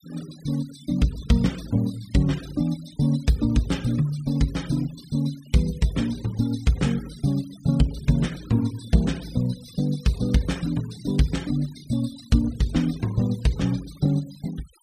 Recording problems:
denoising artefacts; signal-to-artefact ratio 20 dB

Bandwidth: 15 kHz